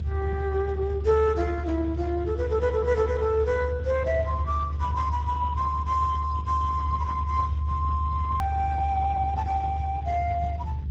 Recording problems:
lossy codec; Speex, log-spectral distance 3 dB
mains hum; 50 Hz, harmonics up to 650 Hz, SNR 23 dB
low-frequency rumble; below 78 Hz, strongest tone 74 Hz, SNR 4 dB
click at an edit; at 8.5 s

